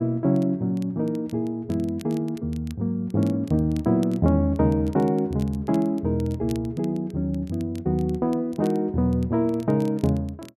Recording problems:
crackle; vinyl, SNR 27 dB

